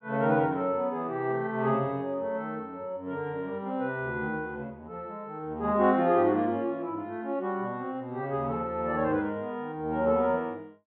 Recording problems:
treble cut off; nothing above 4 kHz

